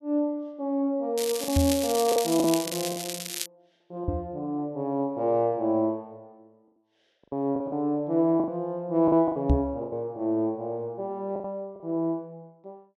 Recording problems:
lost packets; 7% of the sound replaced, filled with the last packet
crackling; from 1 to 3.5 s; loose cable, SNR 5 dB
microphone bump; at 1.5 s, at 4 s and at 9.5 s; peak +8 dB vs average level

